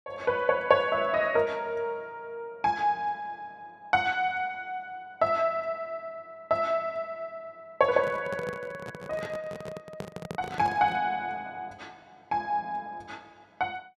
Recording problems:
microphone handling noise; from 8 to 11 s; peak -3 dB vs average level

